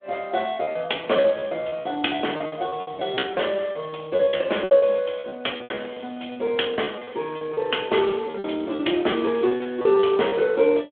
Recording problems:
telephone audio; 260 Hz to 3.4 kHz, Speex
lost packets; 16% of the sound replaced, filled with repeated pitch periods

